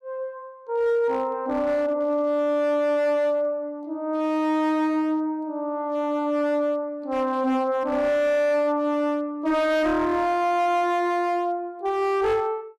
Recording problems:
distorted audio; hard clipping, signal-to-distortion ratio 12 dB

